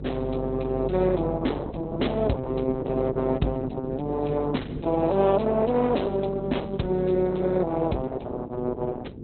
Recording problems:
codec artefacts; Opus, log-spectral distance 3 dB, nothing above 4.1 kHz
mains hum; 50 Hz, harmonics up to 550 Hz, SNR 8 dB

